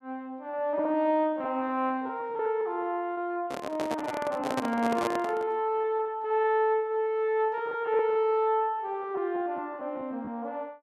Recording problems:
packet loss; 13% of the sound replaced, filled with repeated pitch periods
handling noise; from 3.5 to 5.5 s; peak +3 dB vs average level

